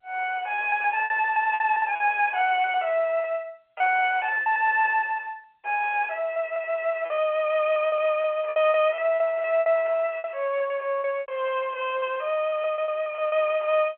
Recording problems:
telephone audio; 320 Hz to 3.3 kHz, G.711
packet loss; 11% of the sound replaced, filled with repeated pitch periods

